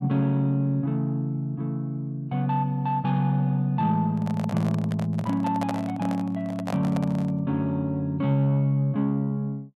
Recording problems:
microphone handling noise; from 4 to 7.5 s; peak -3 dB vs average level

